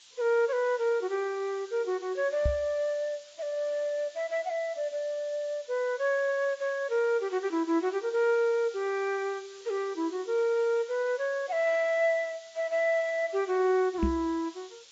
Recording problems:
codec artefacts; AAC, log-spectral distance 6 dB
hiss; SNR 22 dB
knock on the microphone; at 2.5 s and at 14 s; peak +3 dB vs average level

